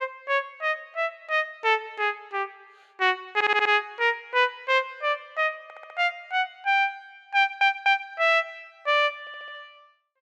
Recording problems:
audio stuttering; 4 times, first at 3.5 s

